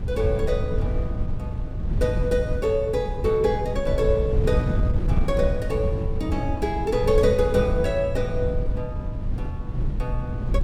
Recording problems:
wind on the microphone; below 110 Hz, SNR 2 dB

